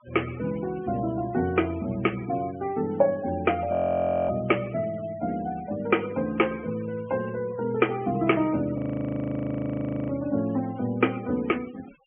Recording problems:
treble cut off; nothing above 3.1 kHz
noise reduction artefacts; signal-to-artefact ratio 20 dB
audio freezing; at 3.5 s for 0.5 s and at 9 s for 1.5 s

